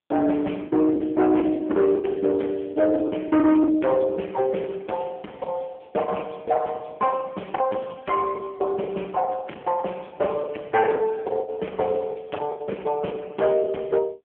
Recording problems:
phone line; 220 Hz to 3 kHz, AMR-NB
distorted audio; hard clipping, signal-to-distortion ratio 11 dB
lost packets; 14% of the sound replaced, filled with the last packet

